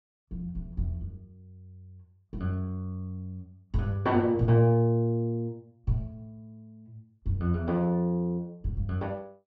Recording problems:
treble cut off; nothing above 7.6 kHz

